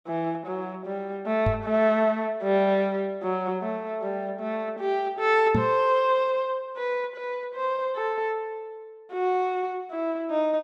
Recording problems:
microphone bump; at 1.5 s and at 5.5 s; peak +4 dB vs average level

